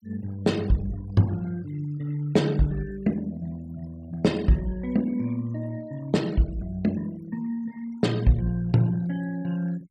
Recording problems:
noise reduction artefacts; signal-to-artefact ratio 23 dB

